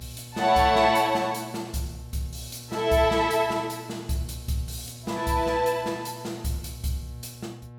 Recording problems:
mains hum; 60 Hz, harmonics up to 1.3 kHz, SNR 18 dB

